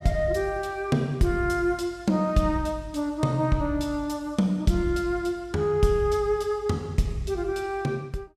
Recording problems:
none

